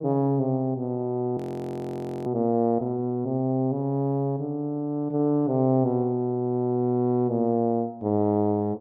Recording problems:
frozen audio; at 1.5 s for 1 s

